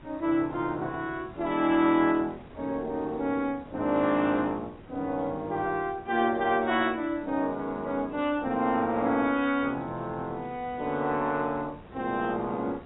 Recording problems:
lossy compression; AAC, log-spectral distance 2 dB, nothing above 3.7 kHz
wind on the microphone; below 750 Hz, SNR 21 dB

